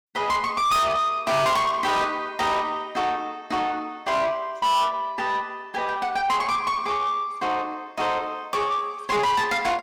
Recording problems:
distorted audio; soft clipping, signal-to-distortion ratio 6 dB

